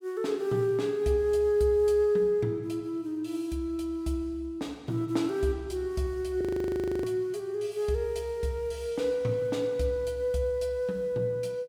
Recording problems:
frozen audio; at 6.5 s for 0.5 s

